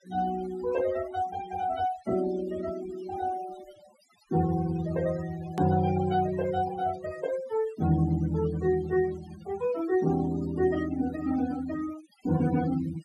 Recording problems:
denoising artefacts; signal-to-artefact ratio 15 dB
edit click; at 5.5 s

